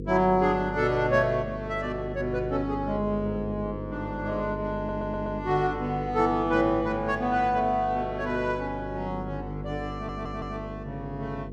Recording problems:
hum; 50 Hz, harmonics up to 500 Hz, SNR 9 dB
stutter; at 5 s and at 10 s

